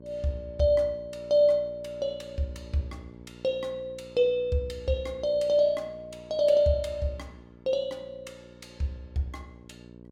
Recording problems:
hum; 60 Hz, harmonics up to 1.1 kHz, SNR 21 dB

